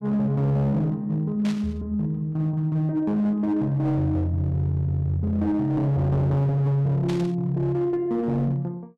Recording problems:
distorted audio; hard clipping, signal-to-distortion ratio 12 dB
burst of static; at 1.5 s and at 7 s; peak -9 dB vs average level

